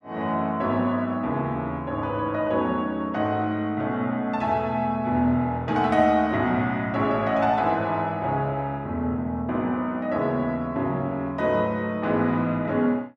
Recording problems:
none

